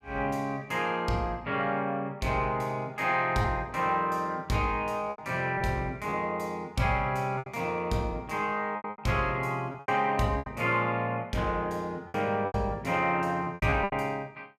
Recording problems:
lost packets; 6% of the sound replaced, filled with repeated pitch periods

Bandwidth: 15.5 kHz